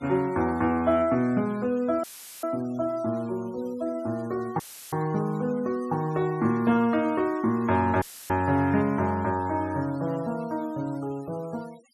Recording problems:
denoising artefacts; signal-to-artefact ratio 24 dB
dropout; at 2 s, at 4.5 s and at 8 s; filled with static

